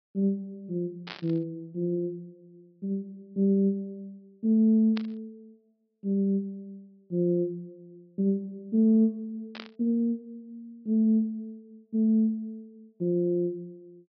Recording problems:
treble missing; nothing above 5.5 kHz
burst of static; at 1 s, at 5 s and at 9.5 s; peak -7 dB vs average level

